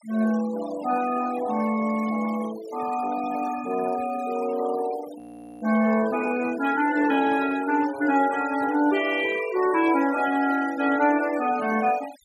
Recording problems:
noise reduction artefacts; signal-to-artefact ratio 16 dB
frozen audio; at 5 s

